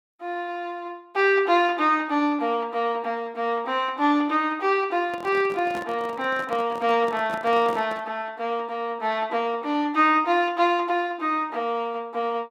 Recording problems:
microphone handling noise; from 5 to 8 s; peak -7 dB vs average level

